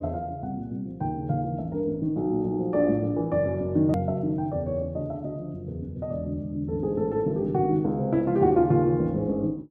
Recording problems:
click at an edit; at 4 s

